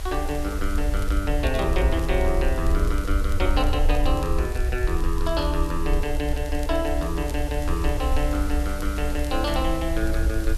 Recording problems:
hiss; slope -2 dB per octave, SNR 14 dB
low-frequency rumble; below 62 Hz, SNR 0 dB
crackle; vinyl, SNR 22 dB

